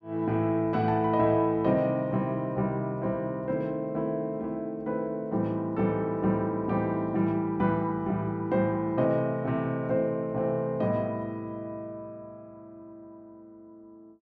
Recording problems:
none

